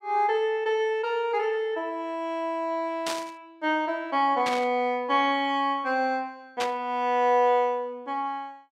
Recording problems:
static burst; at 3 s, at 4.5 s and at 6.5 s; peak -1 dB vs average level

